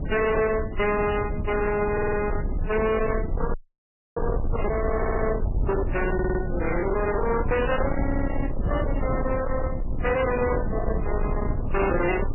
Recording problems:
lossy compression; MP3, then MP3, log-spectral distance 3 dB, nothing above 2.9 kHz
distorted audio; hard clipping, signal-to-distortion ratio 6 dB
low-frequency rumble; below 280 Hz, SNR 3 dB
burst of static; at 1.5 s, at 4.5 s and at 6.5 s; peak -3 dB vs average level
audio stuttering; 4 times, first at 2 s
audio freezing; at 3.5 s for 0.5 s

